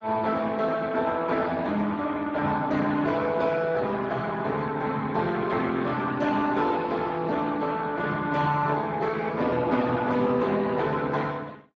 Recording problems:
lossy compression; Speex, log-spectral distance 4 dB

